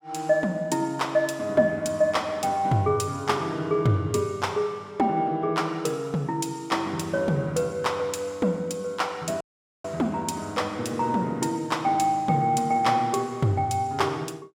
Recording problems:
audio cutting out; at 9.5 s

